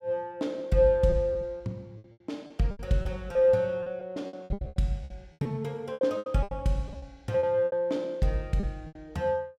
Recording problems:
packet loss; 14% of the sound replaced, filled with repeated pitch periods

